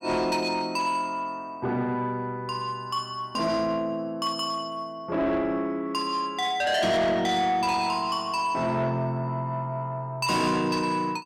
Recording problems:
distorted audio; soft clipping, signal-to-distortion ratio 10 dB

